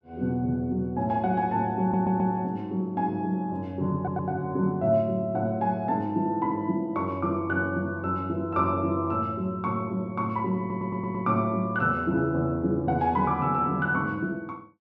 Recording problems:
stutter; at 2 s, at 4 s and at 11 s

